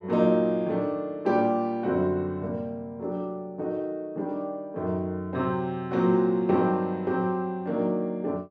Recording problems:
none

